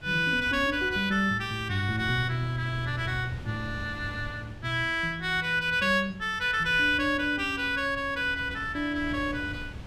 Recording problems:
wind on the microphone; below 210 Hz, SNR 16 dB

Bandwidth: 14.5 kHz